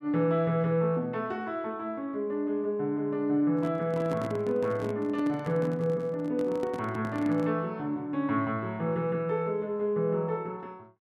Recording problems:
handling noise; from 3.5 to 7.5 s; peak -3 dB vs average level

